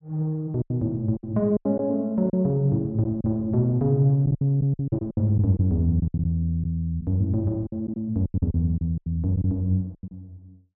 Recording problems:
lost packets; 11% of the sound replaced, filled with silence

